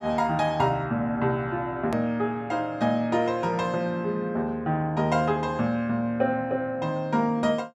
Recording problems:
edit click; at 2 s

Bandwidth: 12.5 kHz